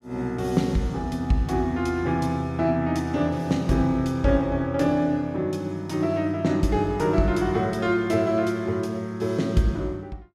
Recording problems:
none

